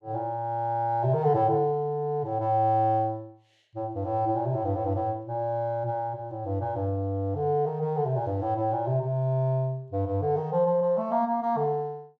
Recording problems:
none

